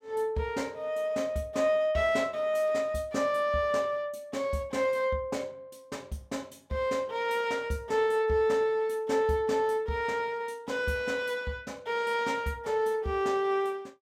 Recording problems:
none

